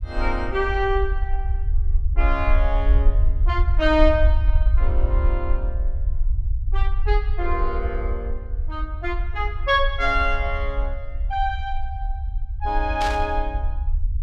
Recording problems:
low-frequency rumble; below 58 Hz, SNR 0 dB
burst of static; at 13 s; peak -1 dB vs average level

